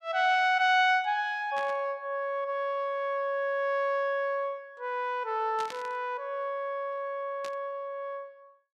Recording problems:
burst of static; at 1.5 s, at 5.5 s and at 7.5 s; peak -8 dB vs average level

